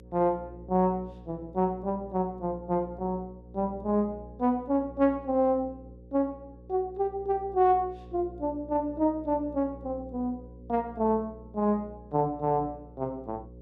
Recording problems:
hum; 60 Hz, harmonics up to 540 Hz, SNR 18 dB

